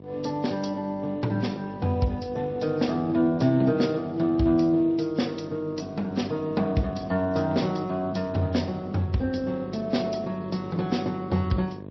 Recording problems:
lossy compression; MP3, then Speex, log-spectral distance 3 dB
hum; 50 Hz, harmonics up to 1.1 kHz, SNR 15 dB

